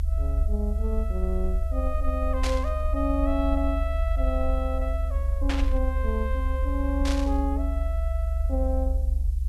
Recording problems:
background hiss; slope +5 dB per octave, SNR 28 dB
rumble; below 68 Hz, SNR -4 dB
static burst; at 2.5 s, at 5.5 s and at 7 s; peak +3 dB vs average level

